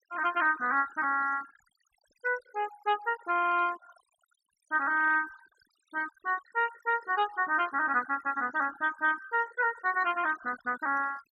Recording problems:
denoising artefacts; signal-to-artefact ratio 18 dB

